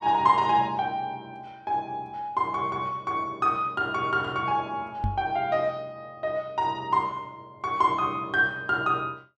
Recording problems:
knock on the microphone; at 5 s; peak +1 dB vs average level

